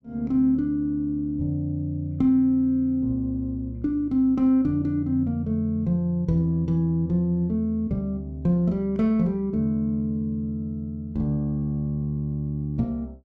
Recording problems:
none

